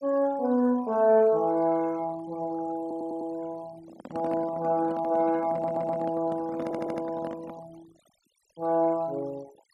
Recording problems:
denoising artefacts; signal-to-artefact ratio 24 dB
stutter; at 3 s, at 5.5 s and at 6.5 s
microphone handling noise; from 4 to 7.5 s; peak -7 dB vs average level

